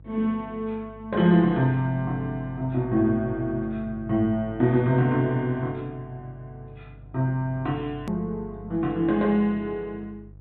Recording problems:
treble cut off; nothing above 4 kHz
hum; 50 Hz, harmonics up to 500 Hz, SNR 19 dB
edit click; at 8 s

